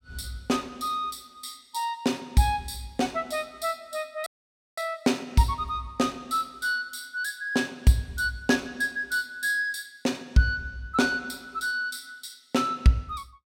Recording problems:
audio cutting out; at 4.5 s for 0.5 s

